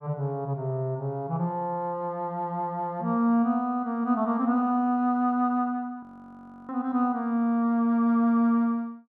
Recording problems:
audio freezing; at 6 s for 0.5 s

